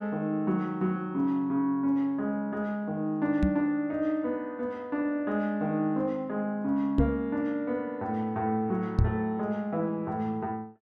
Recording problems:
knock on the microphone; at 3.5 s, at 7 s and at 9 s; peak +8 dB vs average level

